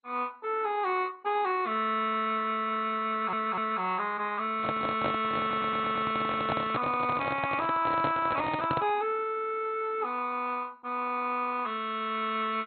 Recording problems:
codec artefacts; MP2, then MP2, log-spectral distance 4 dB, nothing above 3.8 kHz
audio stuttering; at 3 s and at 5.5 s
microphone handling noise; from 4.5 to 9 s; peak +2 dB vs average level

